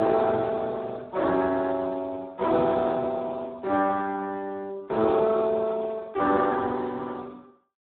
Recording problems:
telephone audio; 260 Hz to 2.3 kHz, Speex

